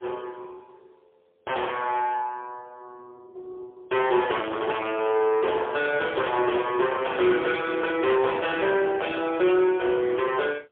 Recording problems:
telephone audio; 300 Hz to 3.4 kHz, AMR-NB, then MP3
distortion; hard clipping, signal-to-distortion ratio 7 dB

